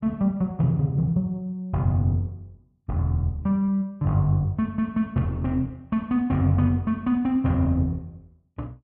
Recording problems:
none

